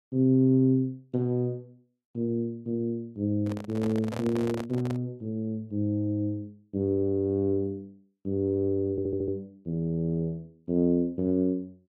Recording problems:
handling noise; from 3.5 to 5 s; peak -4 dB vs average level
stutter; at 9 s

